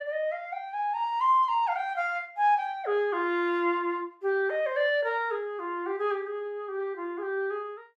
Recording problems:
none

